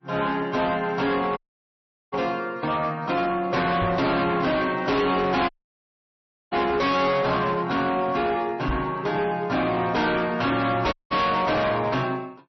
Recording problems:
lossy codec; MP3, log-spectral distance 3 dB, nothing above 5.8 kHz
distorted audio; hard clipping, signal-to-distortion ratio 7 dB
dropout; at 1.5 s for 1 s, at 5.5 s for 1 s and at 11 s
microphone thump; at 4 s, at 8.5 s and at 11 s; peak 0 dB vs average level

